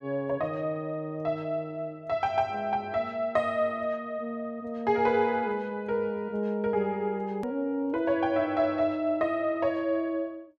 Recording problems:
edit click; at 7.5 s

